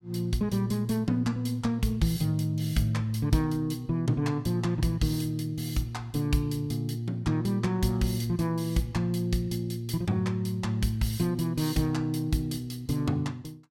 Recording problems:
none

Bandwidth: 16.5 kHz